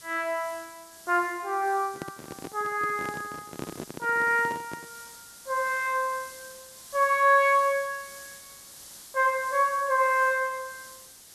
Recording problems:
hiss; SNR 19 dB
microphone handling noise; from 2 to 5 s; peak -5 dB vs average level

